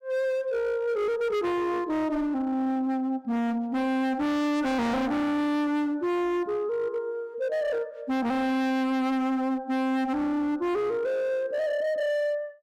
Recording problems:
distortion; hard clipping, signal-to-distortion ratio 7 dB

